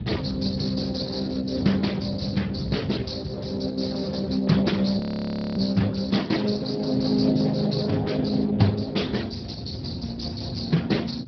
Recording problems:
treble missing; nothing above 5.3 kHz
lossy codec; Opus, then Speex, log-spectral distance 6 dB
low-frequency rumble; below 190 Hz, SNR 11 dB
frozen audio; at 5 s for 0.5 s

